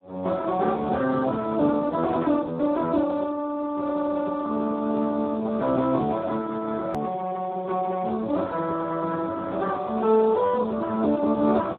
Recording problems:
telephone audio; 190 Hz to 2 kHz, Speex
hard cut with a click; at 7 s

